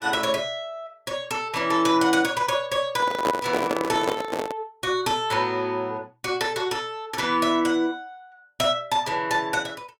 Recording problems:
microphone handling noise; from 3 to 4.5 s; peak +4 dB vs average level

